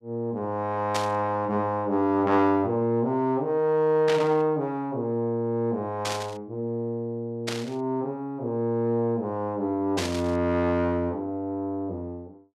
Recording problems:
static burst; 5 times, first at 1 s; peak 0 dB vs average level

